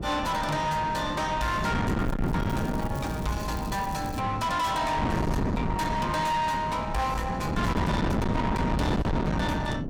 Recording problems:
distortion; soft clipping, signal-to-distortion ratio 7 dB
wind on the microphone; below 520 Hz, SNR 1 dB
crackling; from 2 to 4 s; loose cable, SNR 19 dB

